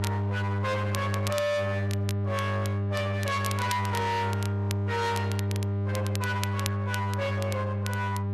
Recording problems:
distortion; hard clipping, signal-to-distortion ratio 7 dB
electrical hum; 50 Hz, harmonics up to 800 Hz, SNR -1 dB
crackle; vinyl, SNR 11 dB

